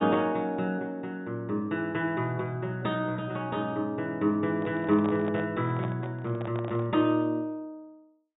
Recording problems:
low-pass filter; nothing above 4 kHz
handling noise; from 4.5 to 7 s; peak -6 dB vs average level

